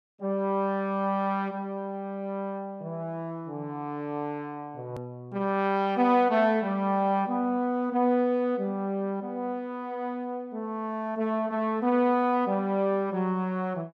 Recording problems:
hard cut with a click; at 5 s

